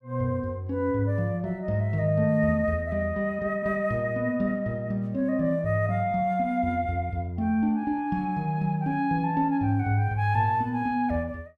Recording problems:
none

